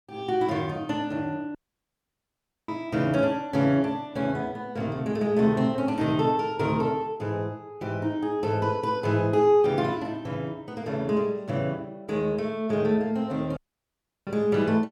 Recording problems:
dropout; at 1.5 s for 1 s and at 14 s for 0.5 s

